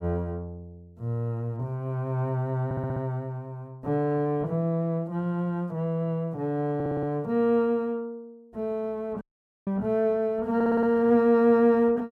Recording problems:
stutter; at 2.5 s, at 6.5 s and at 11 s
dropout; at 9 s

